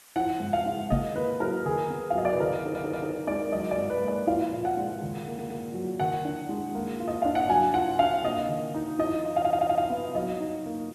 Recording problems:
background hiss; SNR 24 dB
knock on the microphone; at 1 s; peak +5 dB vs average level
audio stuttering; at 2.5 s, at 5.5 s and at 9.5 s

